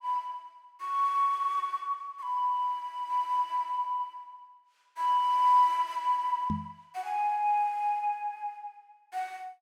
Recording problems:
microphone bump; at 6.5 s; peak 0 dB vs average level

